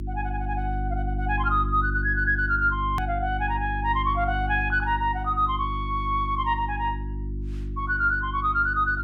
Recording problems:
hum; 50 Hz, harmonics up to 350 Hz, SNR 6 dB
hard cut with a click; at 3 s

